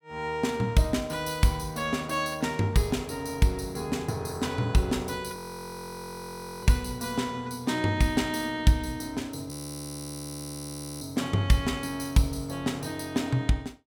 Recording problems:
frozen audio; at 5.5 s for 1.5 s and at 9.5 s for 1.5 s

